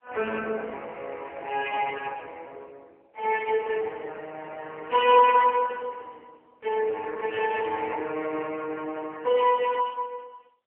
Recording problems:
telephone audio; 340 Hz to 2.9 kHz, AMR-NB

